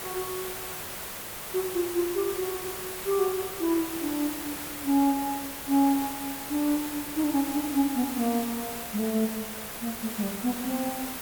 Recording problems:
background hiss; slope -2 dB per octave, SNR 6 dB

